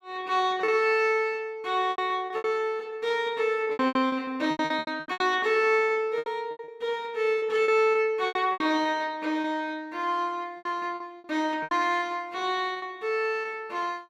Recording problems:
packet loss; 13% of the sound replaced, filled with repeated pitch periods

